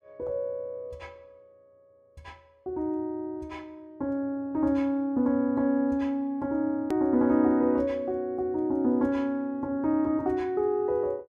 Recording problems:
edit click; at 7 s

